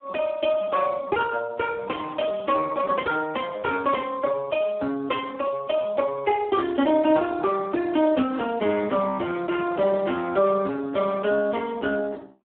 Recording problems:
telephone audio; 220 Hz to 2.2 kHz, Speex

